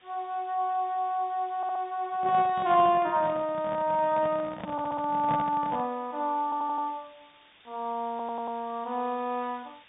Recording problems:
treble cut off; nothing above 3.7 kHz
hiss; SNR 29 dB
audio stuttering; 4 times, first at 1.5 s
handling noise; from 2 to 6 s; peak -3 dB vs average level

